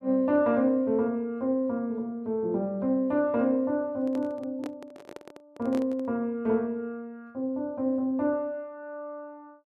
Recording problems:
microphone handling noise; from 4 to 6 s; peak -7 dB vs average level

